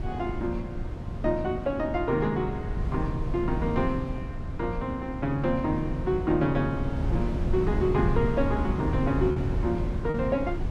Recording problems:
wind on the microphone; below 140 Hz, SNR 4 dB
packet loss; 0.8% of the sound replaced, filled with repeated pitch periods

